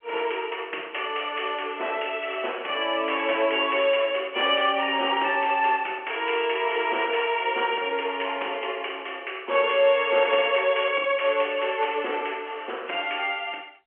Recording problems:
phone line; 300 Hz to 3.3 kHz, G.711

